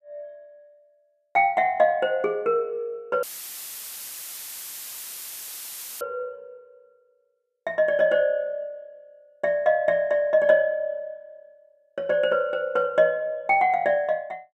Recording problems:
dropout; at 3 s for 3 s; filled with static

